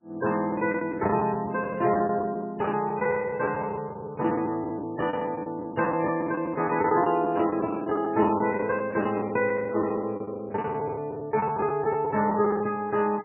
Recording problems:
lossy codec; MP3, log-spectral distance 2 dB, nothing above 2.9 kHz
packet loss; 13% of the sound replaced, filled with the last packet

